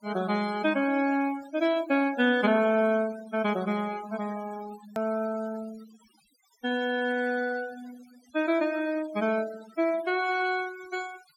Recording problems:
noise reduction artefacts; signal-to-artefact ratio 18 dB
edit click; at 5 s

